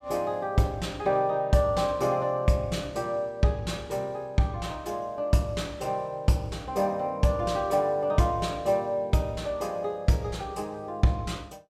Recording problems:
none

